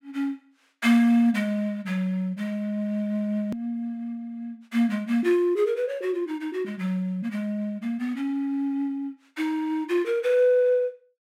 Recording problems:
hard cut with a click; at 3.5 s

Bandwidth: 16 kHz